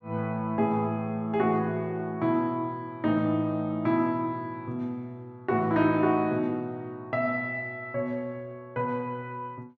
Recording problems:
none

